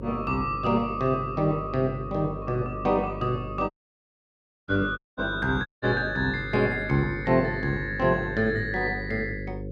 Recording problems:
hum; 50 Hz, harmonics up to 550 Hz, SNR 11 dB
audio cutting out; at 3.5 s for 1 s, at 5 s and at 5.5 s

